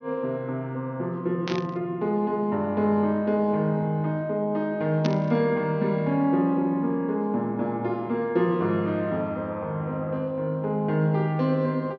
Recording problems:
treble missing; nothing above 6.3 kHz
burst of static; at 1.5 s and at 5 s; peak -4 dB vs average level

